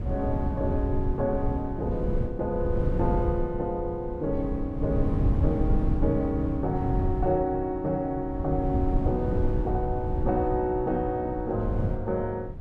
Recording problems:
wind on the microphone; below 130 Hz, SNR 2 dB

